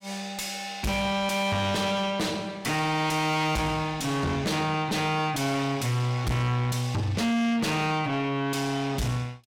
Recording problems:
distorted audio; soft clipping, signal-to-distortion ratio 6 dB

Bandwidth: 16.5 kHz